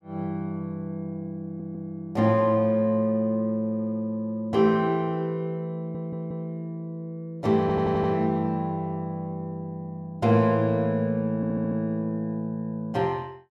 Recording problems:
stutter; 4 times, first at 1.5 s

